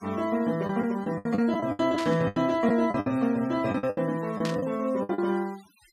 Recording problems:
noise reduction artefacts; signal-to-artefact ratio 23 dB
lost packets; 13% of the sound replaced, filled with the last packet
static burst; at 2 s and at 4.5 s; peak -4 dB vs average level

